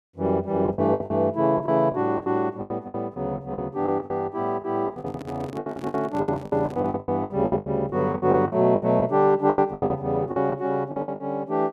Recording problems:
packet loss; 17% of the sound replaced, filled with the last packet
handling noise; from 5 to 7 s; peak -8 dB vs average level

